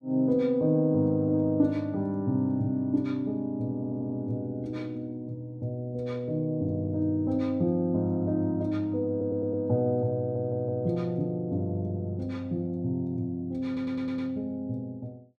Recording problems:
audio stuttering; 4 times, first at 4 s

